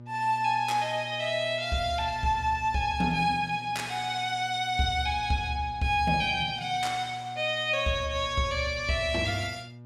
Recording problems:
hum; 60 Hz, harmonics up to 840 Hz, SNR 18 dB

